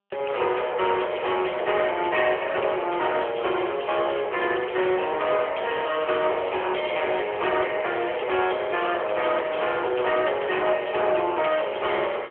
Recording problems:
phone line; 340 Hz to 3.4 kHz, AMR-NB
distorted audio; soft clipping, signal-to-distortion ratio 11 dB

